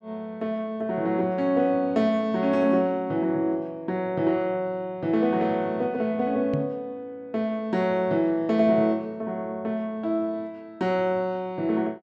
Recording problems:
microphone bump; at 6.5 s; peak +1 dB vs average level

